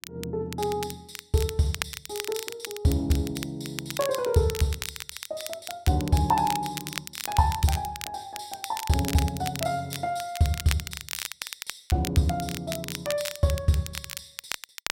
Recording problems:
crackling; vinyl, SNR 8 dB

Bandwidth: 16 kHz